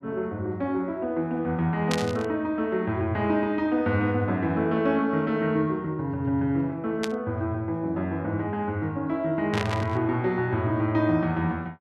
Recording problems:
burst of static; at 2 s, at 7 s and at 9.5 s; peak +1 dB vs average level

